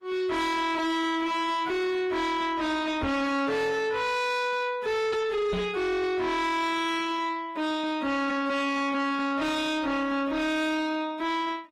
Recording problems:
lossy compression; Opus, log-spectral distance 2 dB, nothing above 18.9 kHz
distortion; soft clipping, signal-to-distortion ratio 7 dB
microphone bump; at 3 s and at 5.5 s; peak 0 dB vs average level

